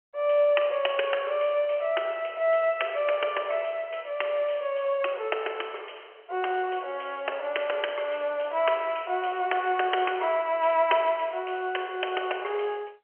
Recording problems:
telephone audio; 340 Hz to 3.2 kHz, G.711

